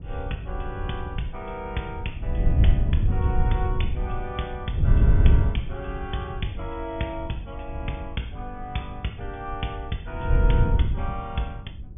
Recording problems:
low-pass filter; nothing above 3.5 kHz
wind on the microphone; below 92 Hz, SNR -7 dB

